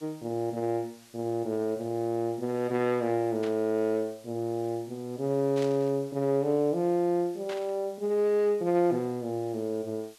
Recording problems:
background hiss; slope +2 dB per octave, SNR 26 dB
burst of static; at 3.5 s, at 5.5 s and at 7.5 s; peak -9 dB vs average level

